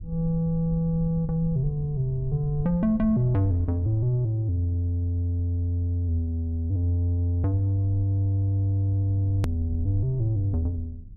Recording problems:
low-frequency rumble; below 82 Hz, SNR 15 dB
edit click; at 9.5 s

